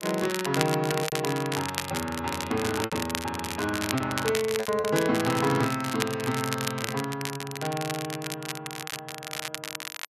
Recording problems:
crackle; vinyl, SNR 5 dB
lost packets; 5% of the sound replaced, filled with repeated pitch periods

